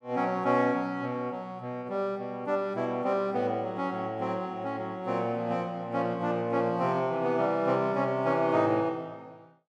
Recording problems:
none

